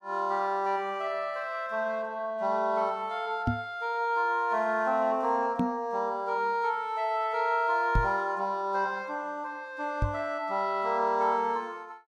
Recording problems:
microphone thump; 4 times, first at 3.5 s; peak +5 dB vs average level

